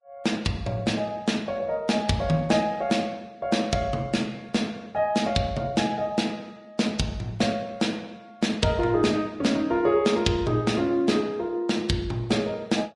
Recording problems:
lossy compression; Vorbis, log-spectral distance 2 dB, nothing above 10.4 kHz

